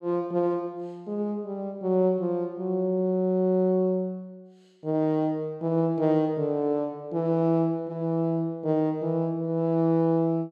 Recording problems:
none

